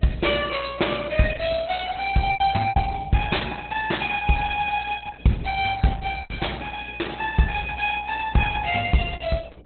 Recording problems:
lossy compression; Opus, log-spectral distance 7 dB, nothing above 4 kHz
hum; 60 Hz, harmonics up to 720 Hz, SNR 22 dB
packet loss; 3% of the sound replaced, filled with repeated pitch periods

